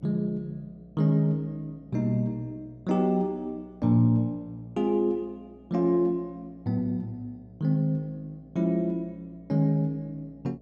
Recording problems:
hum; 60 Hz, harmonics up to 720 Hz, SNR 28 dB

